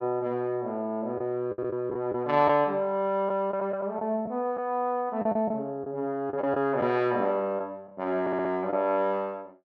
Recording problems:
lost packets; 5% of the sound replaced, filled with the last packet
stutter; at 8 s

